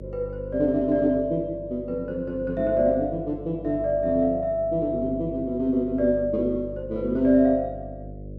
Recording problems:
mains hum; 50 Hz, harmonics up to 600 Hz, SNR 15 dB

